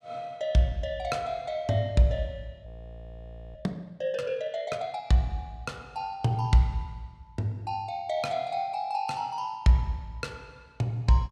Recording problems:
audio freezing; at 2.5 s for 1 s

